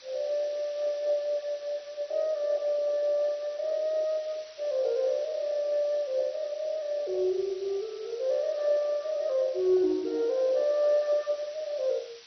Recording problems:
codec artefacts; MP2, log-spectral distance 5 dB, nothing above 6 kHz
hiss; slope +3 dB per octave, SNR 21 dB

